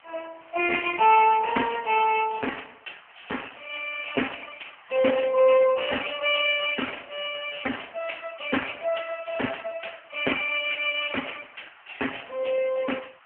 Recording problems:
phone line; 300 Hz to 3.1 kHz, AMR-NB
background hiss; SNR 27 dB

